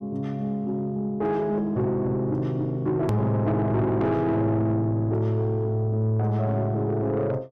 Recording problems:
distortion; soft clipping, signal-to-distortion ratio 10 dB
click at an edit; at 3 s

